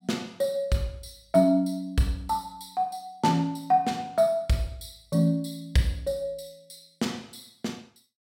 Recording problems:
none

